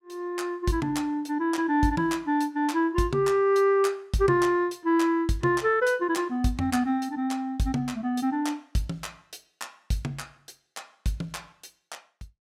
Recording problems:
none

